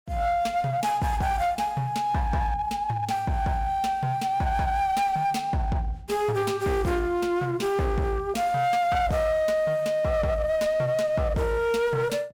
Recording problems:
distorted audio; hard clipping, uneven, signal-to-distortion ratio 11 dB

